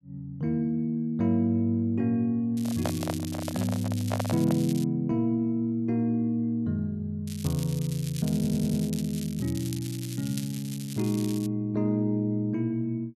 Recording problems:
crackling; from 2.5 to 5 s and from 7.5 to 11 s; loose cable, SNR 14 dB
handling noise; from 2.5 to 4.5 s; peak 0 dB vs average level
stutter; at 8.5 s

